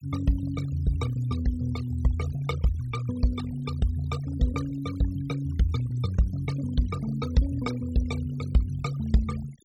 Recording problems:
denoising artefacts; signal-to-artefact ratio 16 dB

